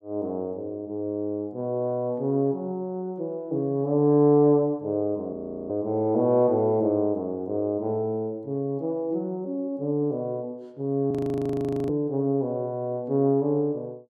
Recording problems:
audio freezing; at 5.5 s and at 11 s for 1 s

